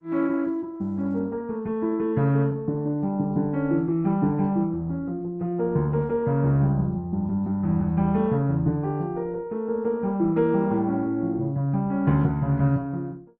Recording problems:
codec artefacts; Opus, log-spectral distance 2 dB

